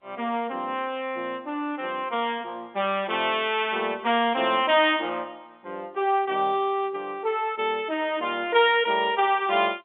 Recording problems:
phone line; 190 Hz to 3.6 kHz, G.711

